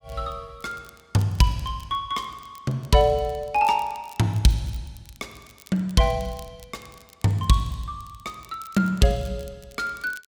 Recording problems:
crackling; vinyl, SNR 26 dB

